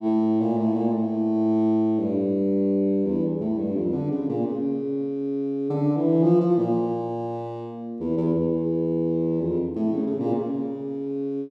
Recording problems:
none

